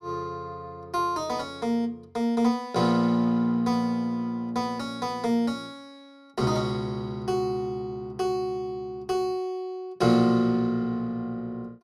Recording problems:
none

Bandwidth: 15 kHz